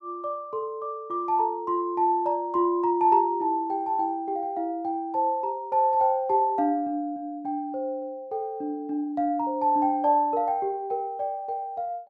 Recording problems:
none

